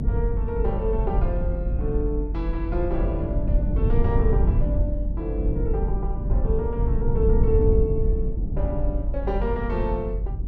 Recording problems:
rumble; below 84 Hz, SNR -4 dB

